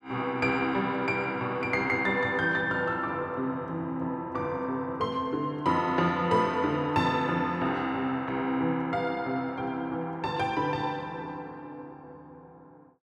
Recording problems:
none

